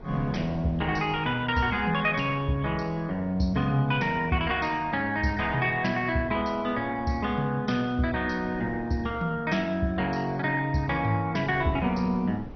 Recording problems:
codec artefacts; MP2, log-spectral distance 3 dB, nothing above 5.8 kHz
wind on the microphone; below 410 Hz, SNR 18 dB

